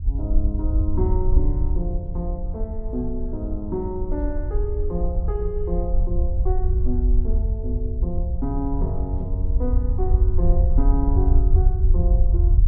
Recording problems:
low-frequency rumble; below 66 Hz, SNR -6 dB

